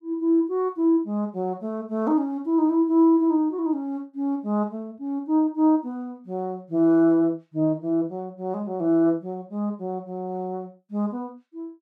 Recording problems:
none

